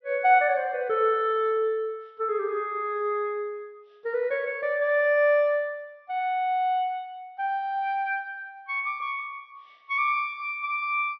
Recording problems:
low-pass filter; nothing above 5.8 kHz

